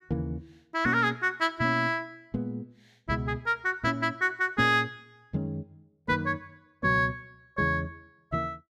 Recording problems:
none

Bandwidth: 14.5 kHz